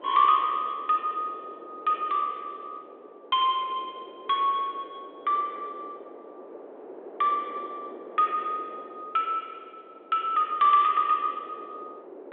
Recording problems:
telephone audio; 300 Hz to 3.4 kHz, G.726
wind noise; below 620 Hz, SNR 19 dB

